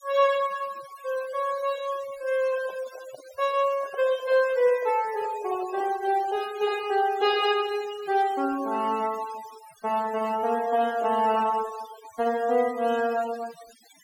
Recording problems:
denoising artefacts; signal-to-artefact ratio 18 dB
handling noise; from 2.5 to 6.5 s; peak -12 dB vs average level

